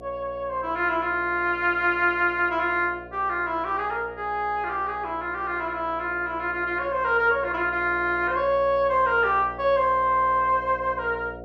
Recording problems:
hum; 60 Hz, harmonics up to 720 Hz, SNR 18 dB

